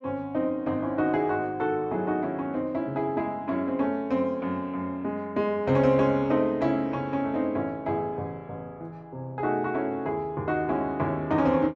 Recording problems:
none

